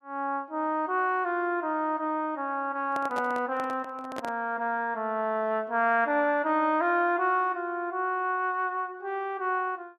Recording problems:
handling noise; from 3 to 4.5 s; peak -5 dB vs average level

